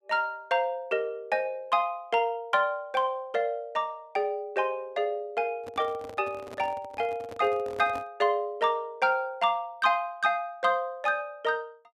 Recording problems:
handling noise; from 5.5 to 8 s; peak -9 dB vs average level

